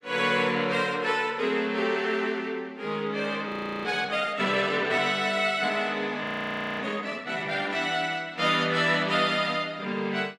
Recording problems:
frozen audio; at 3.5 s and at 6 s for 0.5 s

